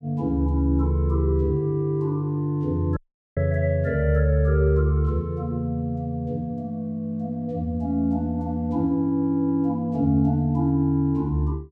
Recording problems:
audio cutting out; at 3 s

